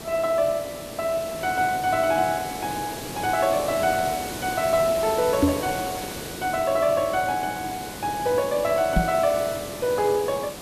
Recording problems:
hiss; SNR 9 dB
microphone thump; at 5.5 s and at 9 s; peak +8 dB vs average level

